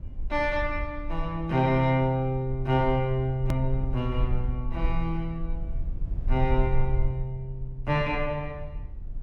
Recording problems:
rumble; below 52 Hz, strongest tone 18 Hz, SNR 7 dB
edit click; at 3.5 s

